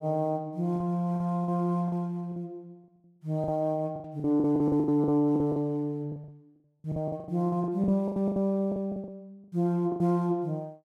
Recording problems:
packet loss; 15% of the sound replaced, filled with the last packet

